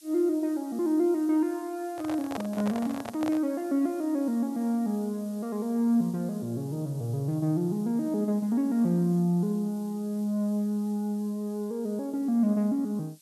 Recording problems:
background hiss; SNR 25 dB
microphone handling noise; from 2 to 3.5 s; peak -3 dB vs average level

